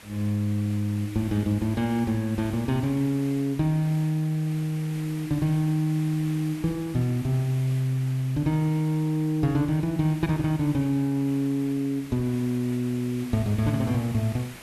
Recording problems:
hiss; SNR 19 dB

